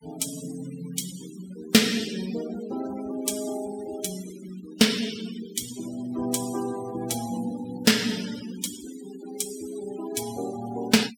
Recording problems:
denoising artefacts; signal-to-artefact ratio 13 dB

